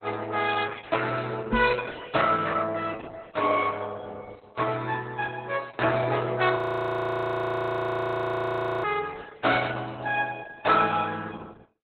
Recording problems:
lossy compression; Opus, log-spectral distance 5 dB, nothing above 3.7 kHz
microphone bump; at 1.5 s; peak +2 dB vs average level
frozen audio; at 6.5 s for 2.5 s

